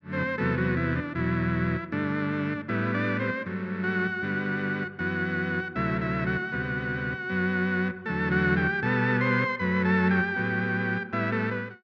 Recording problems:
none

